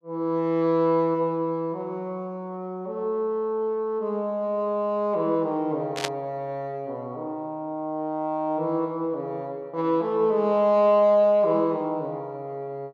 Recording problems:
static burst; at 6 s; peak +2 dB vs average level

